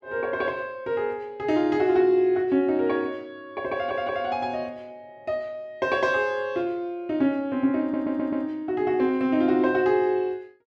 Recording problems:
stutter; at 3.5 s and at 8 s

